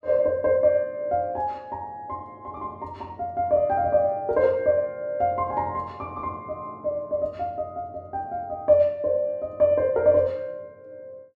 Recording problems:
none

